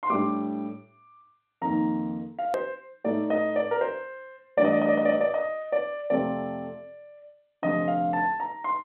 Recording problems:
phone line; 150 Hz to 3.6 kHz, G.711
hard cut with a click; at 2.5 s

